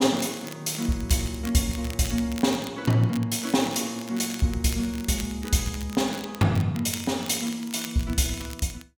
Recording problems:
crackling; vinyl, SNR 15 dB

